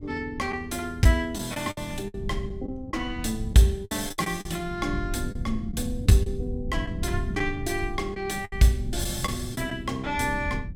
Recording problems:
low-frequency rumble; below 120 Hz, SNR 9 dB
lost packets; 7% of the sound replaced, filled with the last packet

